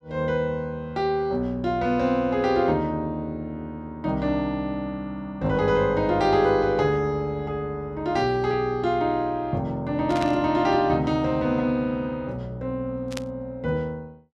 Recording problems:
burst of static; at 10 s and at 13 s; peak -4 dB vs average level

